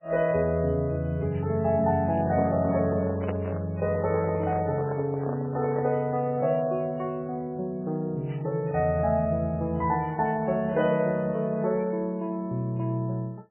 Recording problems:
lossy compression; MP3, log-spectral distance 2 dB, nothing above 2.5 kHz
handling noise; from 2 to 6 s; peak -3 dB vs average level

